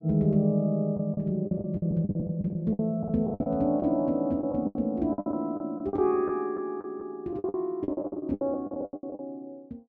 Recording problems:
lost packets; 17% of the sound replaced, filled with the last packet

